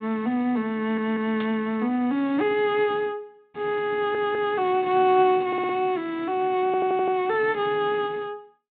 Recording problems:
low-pass filter; nothing above 4 kHz
audio stuttering; 4 times, first at 1 s
burst of static; at 1.5 s; peak -10 dB vs average level

